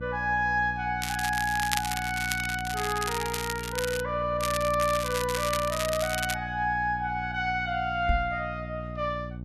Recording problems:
hum; 60 Hz, harmonics up to 600 Hz, SNR 10 dB
crackle; from 1 to 4 s and from 4.5 to 6.5 s; loose cable, SNR 6 dB
microphone bump; at 8 s; peak +4 dB vs average level

